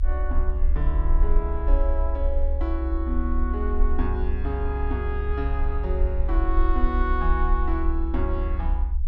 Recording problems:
rumble; below 64 Hz, SNR -4 dB

